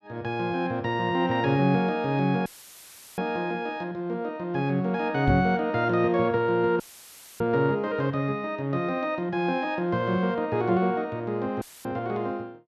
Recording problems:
audio cutting out; at 2.5 s for 0.5 s, at 7 s for 0.5 s and at 12 s; filled with static
microphone thump; at 5.5 s; peak +4 dB vs average level

